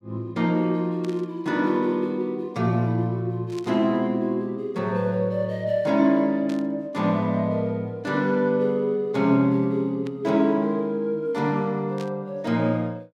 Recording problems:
burst of static; 5 times, first at 1 s; peak -13 dB vs average level

